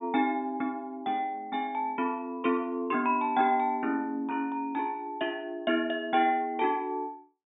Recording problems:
treble missing; nothing above 3.6 kHz

